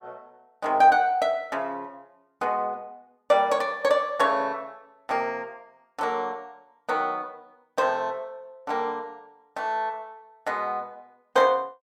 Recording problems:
none

